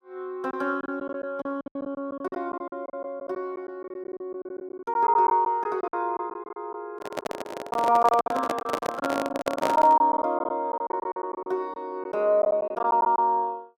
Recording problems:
lost packets; 14% of the sound replaced, filled with silence
handling noise; from 7 to 10 s; peak +4 dB vs average level

